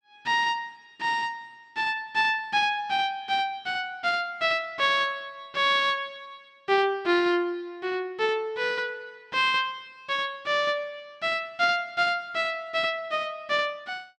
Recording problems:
none

